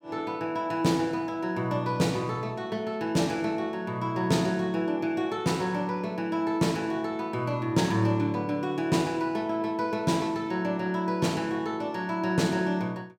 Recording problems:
none

